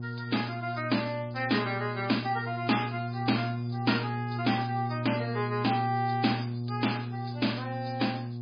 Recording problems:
lossy compression; MP3, log-spectral distance 8 dB, nothing above 5 kHz
hum; 60 Hz, harmonics up to 720 Hz, SNR 5 dB

